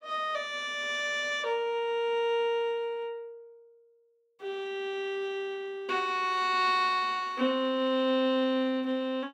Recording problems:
none

